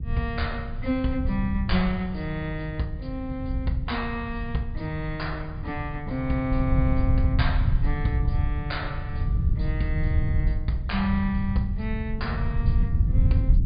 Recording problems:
treble missing; nothing above 4.9 kHz
rumble; below 100 Hz, SNR -2 dB

